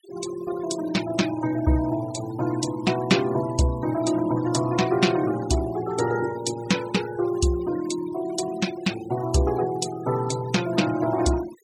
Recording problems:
denoising artefacts; signal-to-artefact ratio 15 dB

